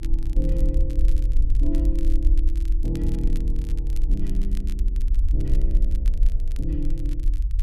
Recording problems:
low-frequency rumble; below 46 Hz, strongest tone 24 Hz, SNR -8 dB
crackling; vinyl, SNR 18 dB

